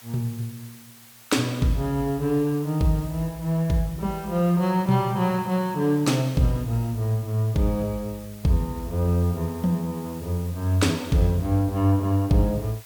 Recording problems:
hiss; slope +1 dB per octave, SNR 21 dB

